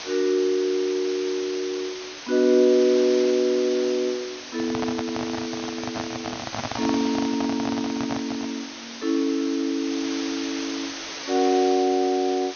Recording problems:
low-pass filter; nothing above 6.5 kHz
hiss; slope 0 dB per octave, SNR 11 dB
microphone handling noise; from 4.5 to 8.5 s; peak -2 dB vs average level

